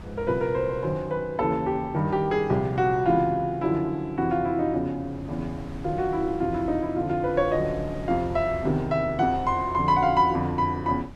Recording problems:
wind on the microphone; below 240 Hz, SNR 18 dB

